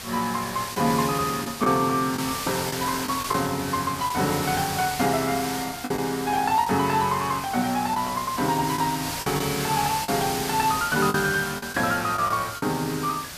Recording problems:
background hiss; slope 0 dB per octave, SNR 7 dB
lost packets; 4% of the sound replaced, filled with the last packet

